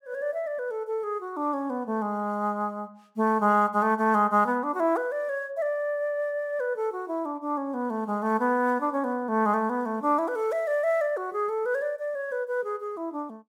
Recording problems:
none

